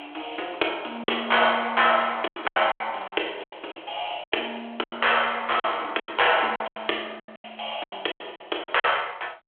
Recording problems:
telephone audio; 300 Hz to 3.4 kHz, G.726
packet loss; 14% of the sound replaced, filled with silence

